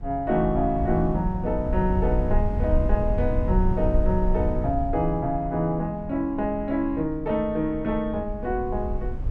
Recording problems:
low-frequency rumble; below 80 Hz, SNR 4 dB

